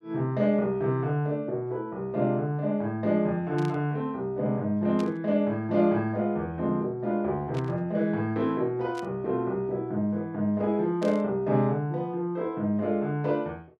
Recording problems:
static burst; 5 times, first at 3.5 s; peak -10 dB vs average level

